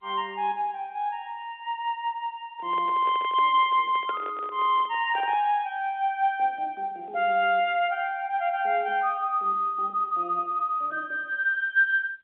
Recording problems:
phone line; 320 Hz to 3.7 kHz, G.711
microphone handling noise; from 2.5 to 5.5 s; peak -8 dB vs average level

